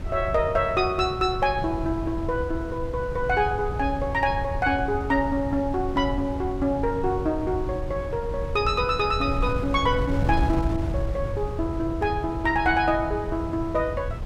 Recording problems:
wind noise; below 130 Hz, SNR 7 dB

